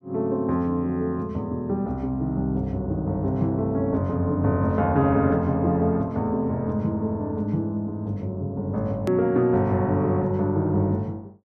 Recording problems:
click at an edit; at 9 s

